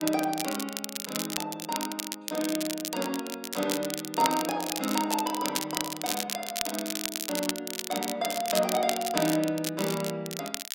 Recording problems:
crackle; vinyl, SNR 3 dB

